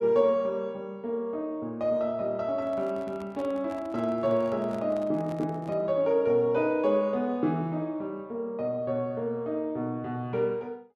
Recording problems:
handling noise; from 2.5 to 6 s; peak -11 dB vs average level

